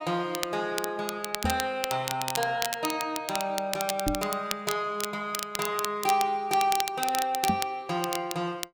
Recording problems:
crackle; vinyl, SNR 5 dB
microphone thump; at 1.5 s, at 4 s and at 7.5 s; peak +4 dB vs average level

